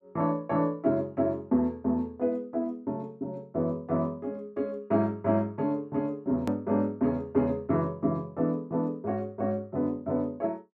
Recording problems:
edit click; at 6.5 s

